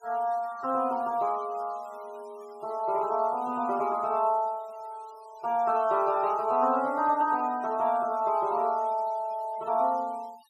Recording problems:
noise reduction artefacts; signal-to-artefact ratio 27 dB

